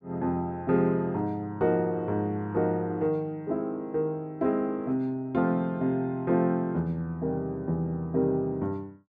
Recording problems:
none

